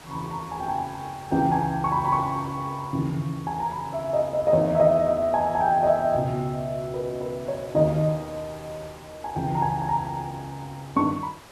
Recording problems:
background hiss; SNR 21 dB

